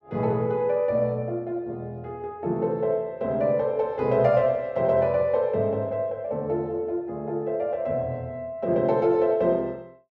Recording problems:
none

